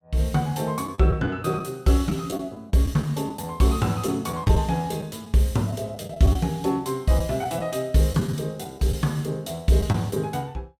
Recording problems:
packet loss; 5% of the sound replaced, filled with the last packet

